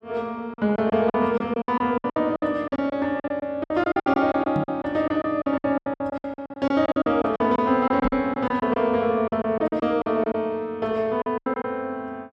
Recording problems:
lost packets; 17% of the sound replaced, filled with silence
microphone bump; at 4.5 s and at 8 s; peak -1 dB vs average level

